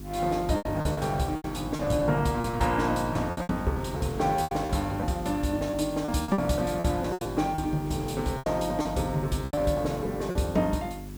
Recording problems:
hum; 50 Hz, harmonics up to 400 Hz, SNR 11 dB
background hiss; slope +3 dB per octave, SNR 23 dB
wind noise; below 2 kHz, SNR 23 dB
lost packets; 12% of the sound replaced, filled with repeated pitch periods

